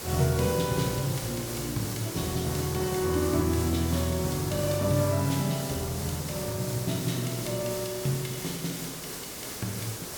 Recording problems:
background hiss; SNR 6 dB

